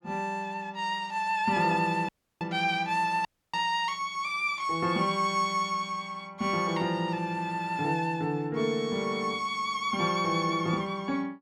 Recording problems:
dropout; at 2 s and at 3.5 s

